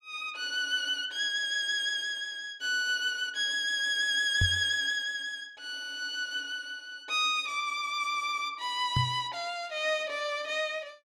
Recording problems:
microphone thump; at 4.5 s and at 9 s; peak +4 dB vs average level

